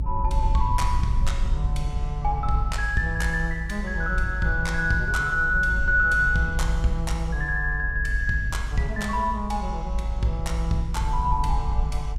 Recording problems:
low-frequency rumble; below 56 Hz, SNR 3 dB

